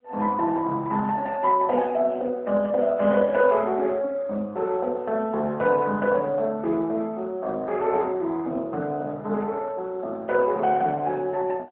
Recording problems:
phone line; 260 Hz to 3 kHz, AMR-NB

